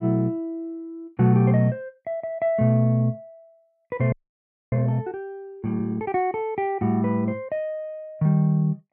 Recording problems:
frozen audio; at 4 s for 0.5 s

